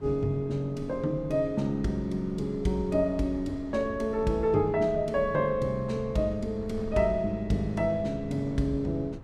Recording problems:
wind noise; below 150 Hz, SNR 16 dB

